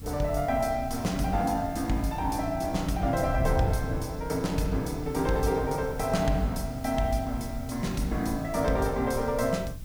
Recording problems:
hiss; slope 0 dB per octave, SNR 23 dB
wind noise; below 110 Hz, SNR 10 dB

